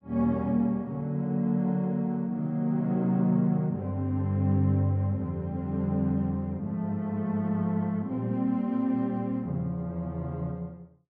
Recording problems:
none

